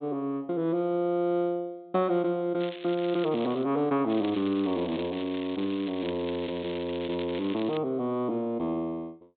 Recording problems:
treble cut off; nothing above 4 kHz
crackle; from 2.5 to 3.5 s and from 4 to 8 s; loose cable, SNR 15 dB

